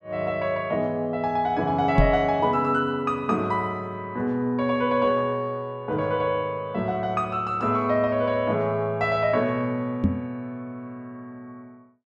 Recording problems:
microphone thump; at 2 s and at 10 s; peak +8 dB vs average level

